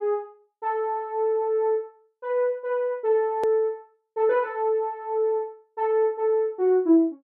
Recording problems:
edit click; at 3.5 s

